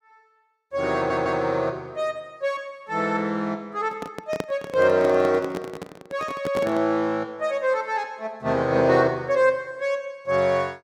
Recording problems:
audio stuttering; at 1 s
microphone handling noise; from 4 to 7 s; peak -1 dB vs average level

